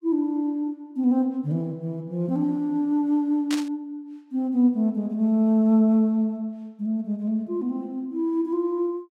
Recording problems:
burst of static; at 3.5 s; peak -3 dB vs average level

